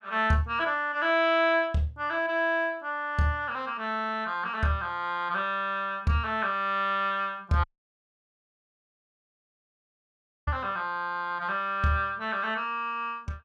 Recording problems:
audio cutting out; at 7.5 s for 3 s

